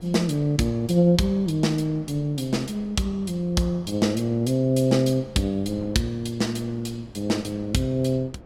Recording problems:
wind on the microphone; below 380 Hz, SNR 23 dB

